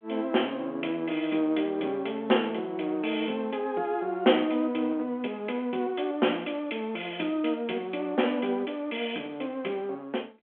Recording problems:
phone line; 220 Hz to 3.4 kHz, G.726

